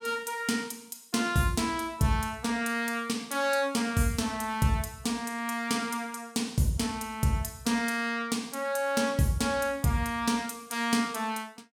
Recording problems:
none

